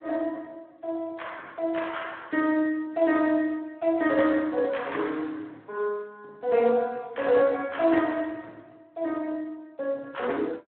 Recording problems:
phone line; 240 Hz to 3.9 kHz, Speex

